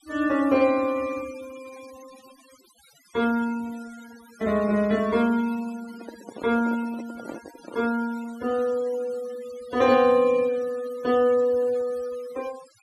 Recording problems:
denoising artefacts; signal-to-artefact ratio 21 dB
handling noise; from 6 to 8 s; peak -9 dB vs average level

